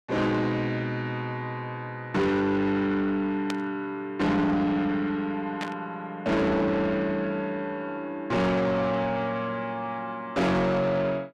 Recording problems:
distorted audio; soft clipping, signal-to-distortion ratio 7 dB
burst of static; at 3.5 s and at 5.5 s; peak -3 dB vs average level

